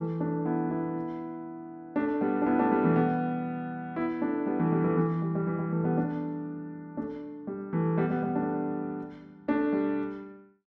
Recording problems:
none

